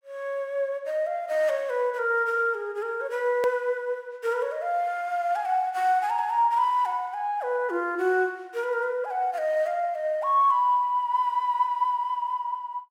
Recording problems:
click at an edit; at 3.5 s

